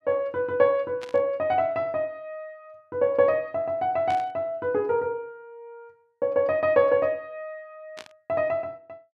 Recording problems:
static burst; at 1 s, at 4 s and at 8 s; peak -11 dB vs average level

